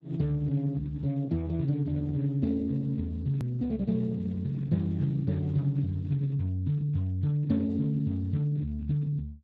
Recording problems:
lossy compression; Speex, log-spectral distance 2 dB, nothing above 13.1 kHz
hard cut with a click; at 3.5 s

